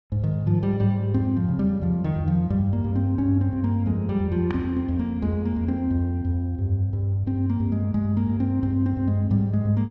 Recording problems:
none

